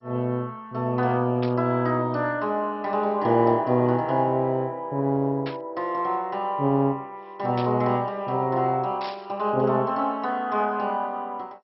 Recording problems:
codec artefacts; MP2, log-spectral distance 2 dB, nothing above 5.5 kHz
static burst; 4 times, first at 1.5 s; peak -8 dB vs average level

